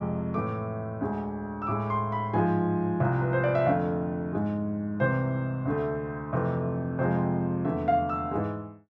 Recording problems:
none

